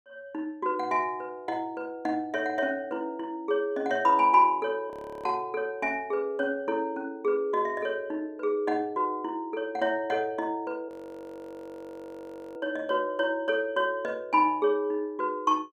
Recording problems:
audio freezing; at 5 s and at 11 s for 1.5 s

